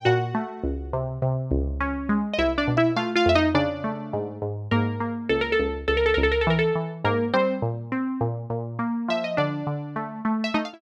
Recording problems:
none

